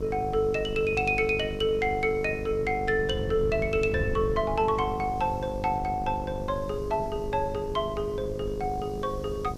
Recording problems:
mains hum; 50 Hz, harmonics up to 1.2 kHz, SNR 10 dB
hiss; SNR 29 dB
wind noise; below 140 Hz, SNR 12 dB

